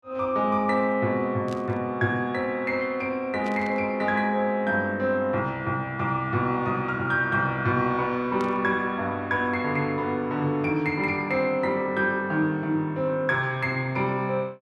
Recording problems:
static burst; at 1.5 s, at 3.5 s and at 8.5 s; peak -13 dB vs average level

